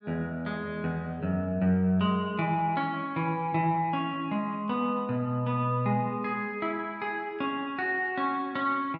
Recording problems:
none

